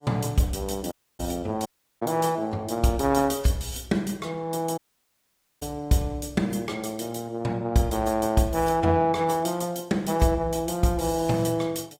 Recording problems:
codec artefacts; AAC, log-spectral distance 3 dB, nothing above 15.5 kHz
audio cutting out; at 1 s, at 1.5 s and at 5 s for 1 s

